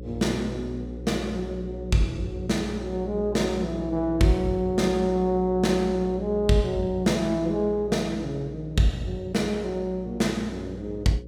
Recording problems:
hum; 60 Hz, harmonics up to 540 Hz, SNR 12 dB

